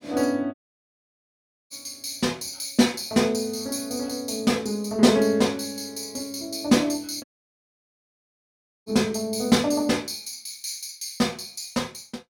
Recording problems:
dropout; at 0.5 s for 1 s and at 7 s for 1.5 s

